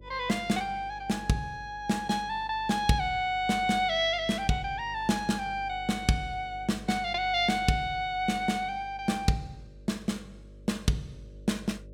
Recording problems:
hum; 50 Hz, harmonics up to 600 Hz, SNR 20 dB

